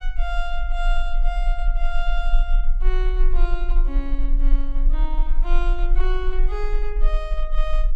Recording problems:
rumble; below 32 Hz, strongest tone 24 Hz, SNR -8 dB

